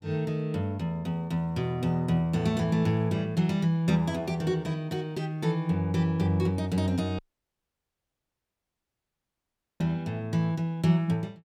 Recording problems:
audio cutting out; at 7 s for 2.5 s

